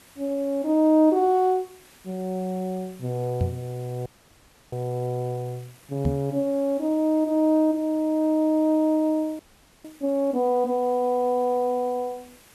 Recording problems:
hiss; slope -2 dB per octave, SNR 27 dB
microphone bump; at 3.5 s and at 6 s; peak +2 dB vs average level
frozen audio; at 4 s for 0.5 s and at 9.5 s

